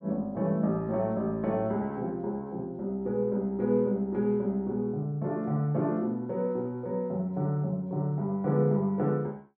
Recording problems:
none

